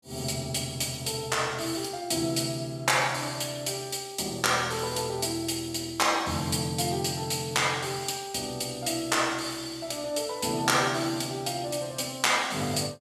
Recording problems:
none

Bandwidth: 14.5 kHz